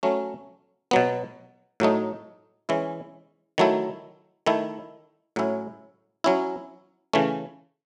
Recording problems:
none

